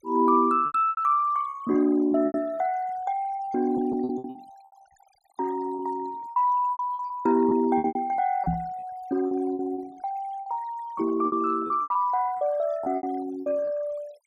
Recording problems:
noise reduction artefacts; signal-to-artefact ratio 24 dB
lost packets; 14% of the sound replaced, filled with repeated pitch periods
microphone thump; at 8.5 s; peak +2 dB vs average level

